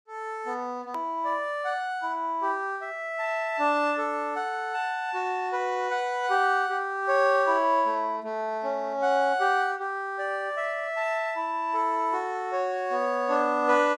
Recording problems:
hard cut with a click; at 1 s

